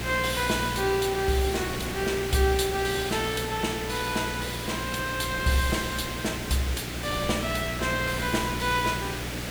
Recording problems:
hum; 60 Hz, harmonics up to 420 Hz, SNR 10 dB
background hiss; SNR 6 dB
wind noise; below 430 Hz, SNR 19 dB

